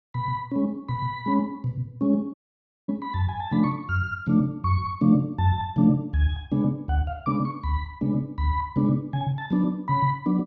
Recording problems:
audio cutting out; at 2.5 s for 0.5 s

